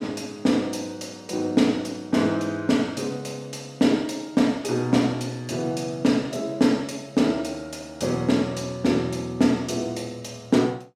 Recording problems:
none

